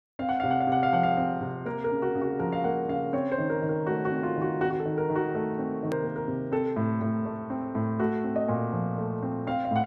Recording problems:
hard cut with a click; at 6 s

